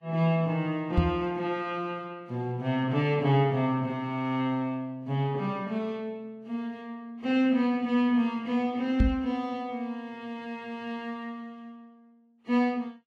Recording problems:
lossy codec; Vorbis, log-spectral distance 2 dB, nothing above 12.3 kHz
knock on the microphone; at 1 s and at 9 s; peak +8 dB vs average level

